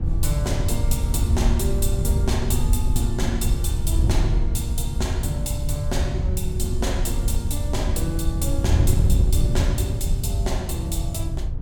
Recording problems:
wind on the microphone; below 96 Hz, SNR -5 dB

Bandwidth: 17 kHz